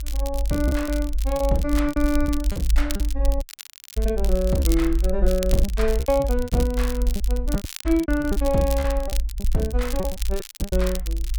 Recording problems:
low-frequency rumble; below 54 Hz, strongest tone 52 Hz, SNR 2 dB
crackling; vinyl, SNR 12 dB
lost packets; 13% of the sound replaced, filled with repeated pitch periods
audio cutting out; at 3.5 s for 0.5 s, at 7.5 s and at 10 s

